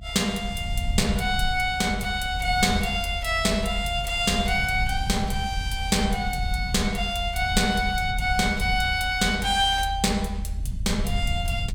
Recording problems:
low-frequency rumble; below 78 Hz, SNR 7 dB

